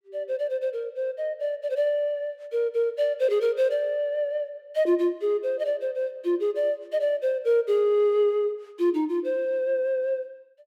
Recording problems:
none

